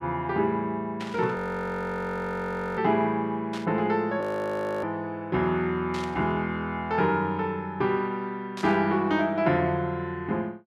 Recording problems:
burst of static; 4 times, first at 1 s; peak -7 dB vs average level
audio freezing; at 1.5 s for 1.5 s and at 4 s for 0.5 s

